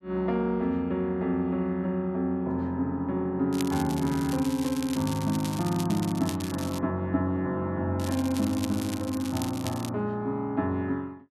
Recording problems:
crackle; from 3.5 to 7 s and from 8 to 10 s; loose cable, SNR 12 dB

